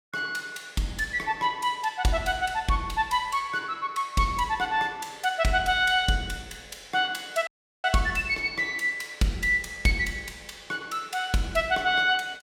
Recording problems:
dropout; at 7.5 s

